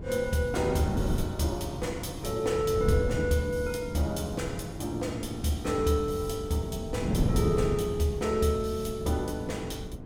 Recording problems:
wind noise; below 240 Hz, SNR 5 dB

